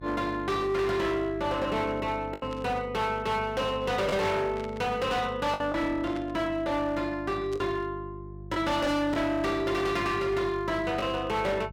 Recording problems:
distortion; hard clipping, uneven, signal-to-distortion ratio 7 dB
hum; 50 Hz, harmonics up to 400 Hz, SNR 15 dB
lost packets; 2% of the sound replaced, filled with the last packet
static burst; 4 times, first at 2.5 s; peak -11 dB vs average level

